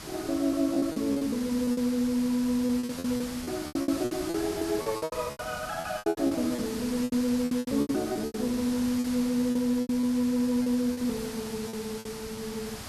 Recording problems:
background hiss; SNR 11 dB
lost packets; 16% of the sound replaced, filled with repeated pitch periods

